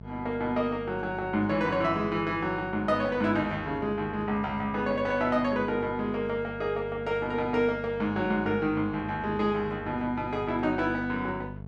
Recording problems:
hum; 50 Hz, harmonics up to 900 Hz, SNR 14 dB

